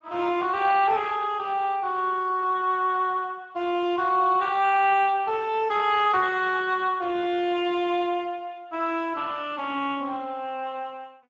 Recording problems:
codec artefacts; Speex, log-spectral distance 3 dB

